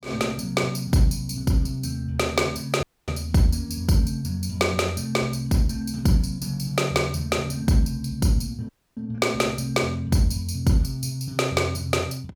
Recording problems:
dropout; at 3 s and at 8.5 s

